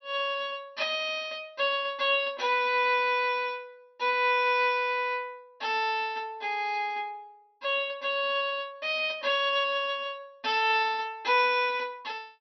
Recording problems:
treble missing; nothing above 5.8 kHz

